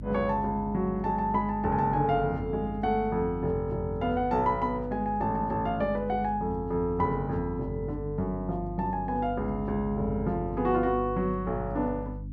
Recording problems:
hum; 50 Hz, harmonics up to 300 Hz, SNR 11 dB

